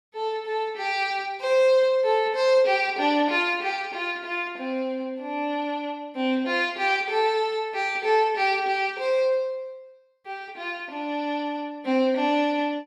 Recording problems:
none

